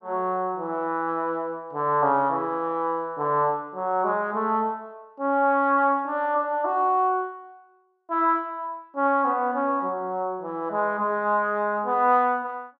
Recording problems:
none

